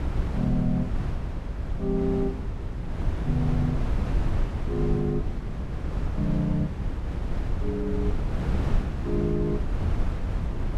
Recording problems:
wind noise; below 130 Hz, SNR 1 dB

